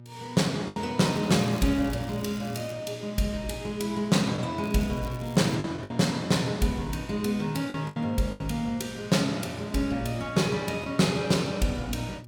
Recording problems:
hum; 60 Hz, harmonics up to 600 Hz, SNR 19 dB
packet loss; 4% of the sound replaced, filled with the last packet
crackling; from 1 to 2.5 s and at 4.5 s; loose cable, SNR 22 dB

